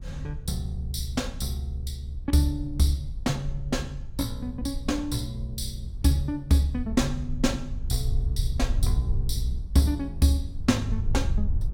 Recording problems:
wind noise; below 70 Hz, SNR 6 dB

